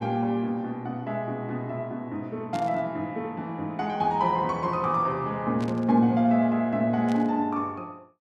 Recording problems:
static burst; at 2.5 s, at 5.5 s and at 7 s; peak -11 dB vs average level

